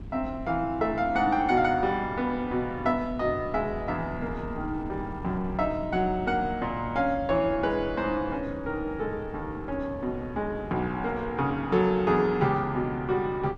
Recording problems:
wind on the microphone; below 230 Hz, SNR 14 dB

